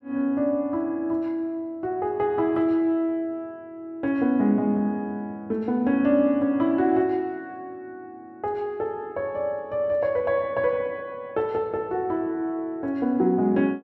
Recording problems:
none

